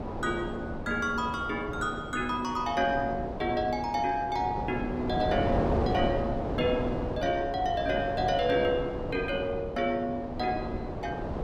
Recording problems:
wind noise; below 620 Hz, SNR 4 dB

